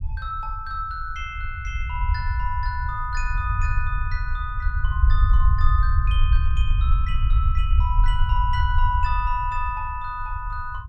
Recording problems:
rumble; below 70 Hz, SNR -5 dB

